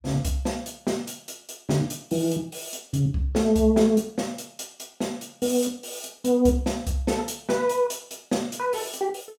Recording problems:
none

